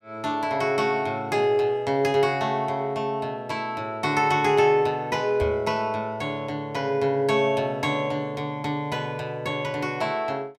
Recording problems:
microphone bump; at 5.5 s; peak -4 dB vs average level

